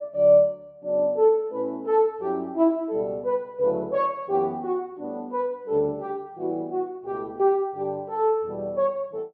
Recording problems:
none

